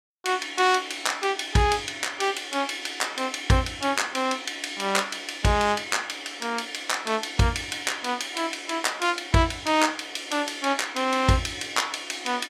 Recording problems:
none

